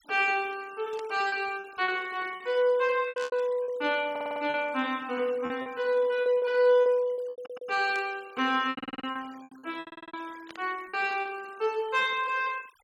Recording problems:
denoising artefacts; signal-to-artefact ratio 24 dB
packet loss; 10% of the sound replaced, filled with repeated pitch periods
burst of static; 4 times, first at 1 s; peak -12 dB vs average level
stutter; 4 times, first at 4 s

